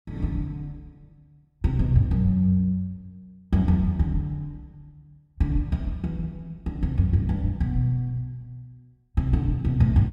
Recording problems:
none

